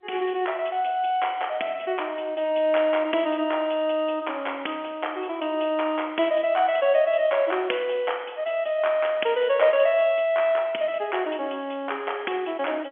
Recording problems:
phone line; 260 Hz to 3.4 kHz, G.711

